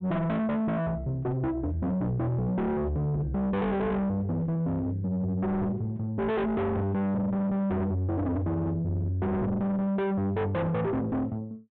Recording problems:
low-pass filter; nothing above 4 kHz
distortion; soft clipping, signal-to-distortion ratio 5 dB

